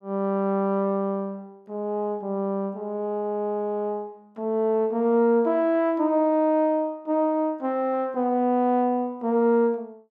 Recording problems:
none

